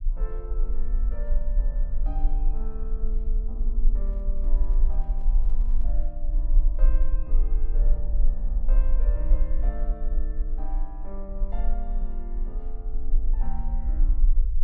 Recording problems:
rumble; below 36 Hz, strongest tone 18 Hz, SNR -15 dB
handling noise; from 4 to 6 s; peak -9 dB vs average level

